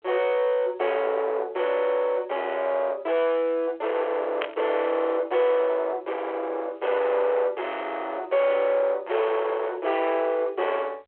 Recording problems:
telephone audio; 340 Hz to 3.3 kHz, G.726
distorted audio; soft clipping, signal-to-distortion ratio 5 dB
burst of static; at 4.5 s; peak -3 dB vs average level

